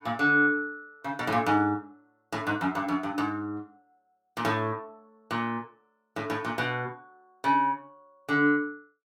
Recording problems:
none

